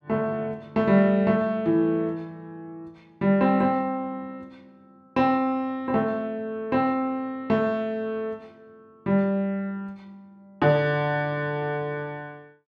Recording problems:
none

